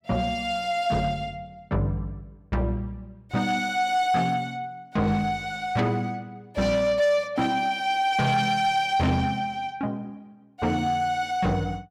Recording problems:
distortion; soft clipping, signal-to-distortion ratio 12 dB

